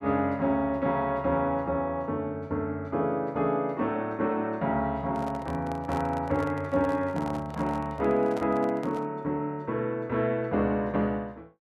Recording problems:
microphone handling noise; from 5 to 9 s; peak -6 dB vs average level

